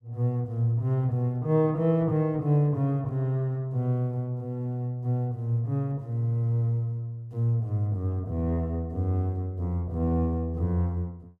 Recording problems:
none

